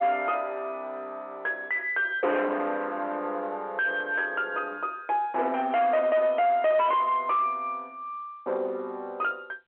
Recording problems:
phone line; 320 Hz to 3.1 kHz, G.711
distortion; soft clipping, signal-to-distortion ratio 7 dB

